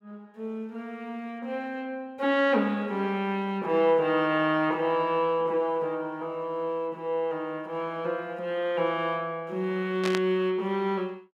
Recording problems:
burst of static; at 10 s; peak 0 dB vs average level

